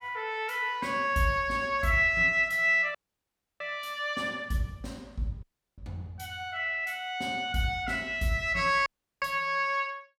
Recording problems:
dropout; at 3 s for 0.5 s, at 5.5 s and at 9 s

